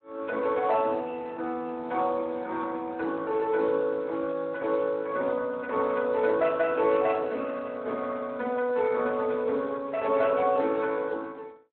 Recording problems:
telephone audio; 260 Hz to 3.3 kHz, Speex

